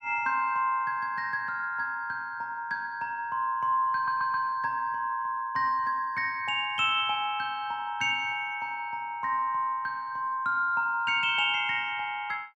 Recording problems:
stutter; at 4 s

